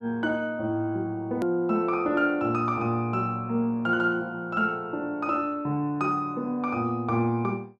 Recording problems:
click at an edit; at 1.5 s

